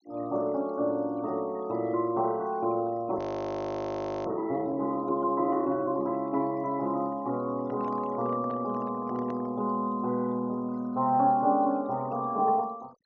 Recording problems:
treble missing; nothing above 6.5 kHz
denoising artefacts; signal-to-artefact ratio 27 dB
audio freezing; at 3 s for 1 s
microphone handling noise; from 7.5 to 9.5 s; peak -10 dB vs average level

